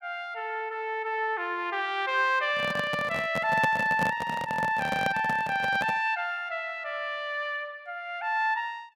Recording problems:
microphone handling noise; from 2.5 to 6 s; peak +2 dB vs average level

